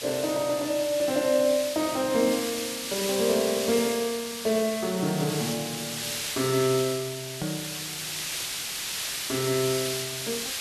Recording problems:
hiss; slope +3 dB per octave, SNR 4 dB
edit click; at 7.5 s

